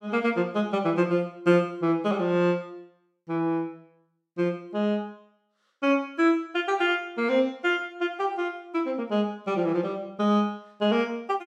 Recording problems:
none

